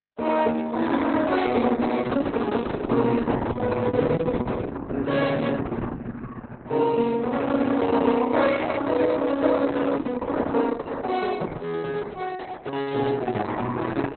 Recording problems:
lossy codec; Opus, then Opus, log-spectral distance 4 dB, nothing above 4.1 kHz

